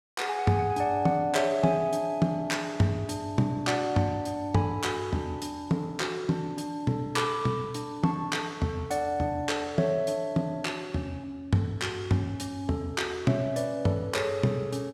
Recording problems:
none

